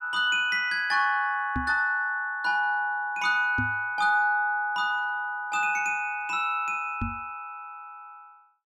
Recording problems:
microphone bump; at 1.5 s, at 3.5 s and at 7 s; peak -2 dB vs average level

